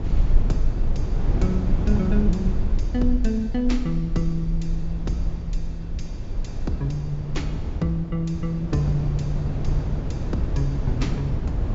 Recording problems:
low-pass filter; nothing above 7.5 kHz
rumble; below 42 Hz, strongest tone 22 Hz, SNR 4 dB
wind noise; below 150 Hz, SNR 2 dB

